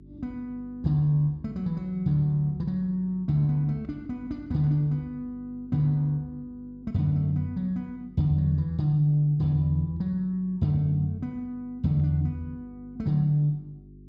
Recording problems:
hum; 50 Hz, harmonics up to 400 Hz, SNR 23 dB

